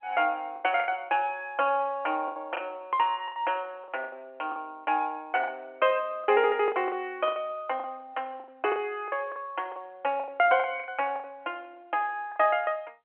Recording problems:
phone line; 280 Hz to 3.1 kHz, G.711
lost packets; 11% of the sound replaced, filled with the last packet

